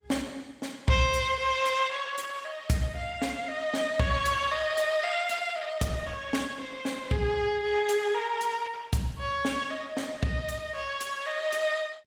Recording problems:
codec artefacts; Opus, log-spectral distance 5 dB, nothing above 19 kHz

